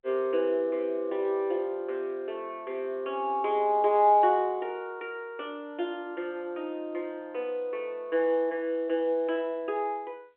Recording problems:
telephone audio; 300 Hz to 3.5 kHz, G.711

